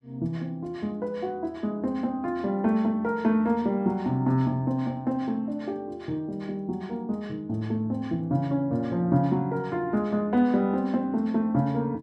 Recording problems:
none

